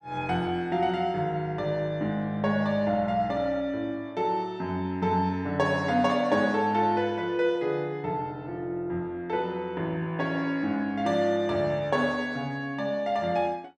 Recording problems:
none

